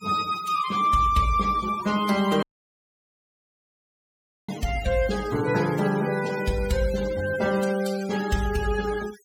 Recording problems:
noise reduction artefacts; signal-to-artefact ratio 15 dB
audio cutting out; at 2.5 s for 2 s

